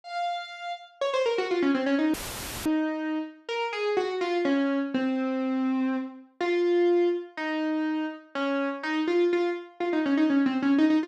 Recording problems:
audio cutting out; at 2 s for 0.5 s; filled with static

